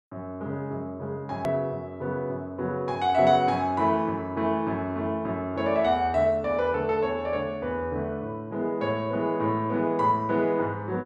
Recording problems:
hard cut with a click; at 1.5 s

